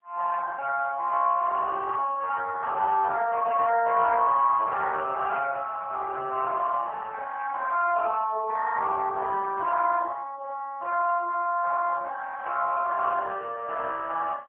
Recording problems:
phone line; 320 Hz to 3.1 kHz, AMR-NB

